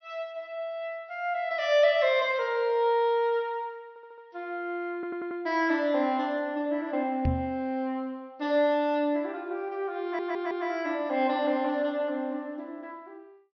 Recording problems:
treble cut off; nothing above 5.8 kHz
stutter; at 4 s, at 5 s and at 10 s
microphone thump; at 7.5 s; peak +4 dB vs average level

